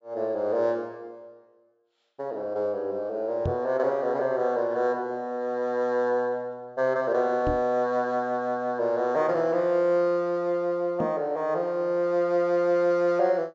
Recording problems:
low-pass filter; nothing above 8 kHz
knock on the microphone; at 3.5 s, at 7.5 s and at 11 s; peak 0 dB vs average level

